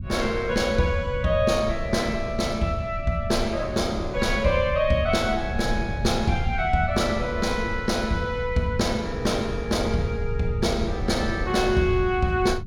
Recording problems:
rumble; below 110 Hz, SNR 9 dB

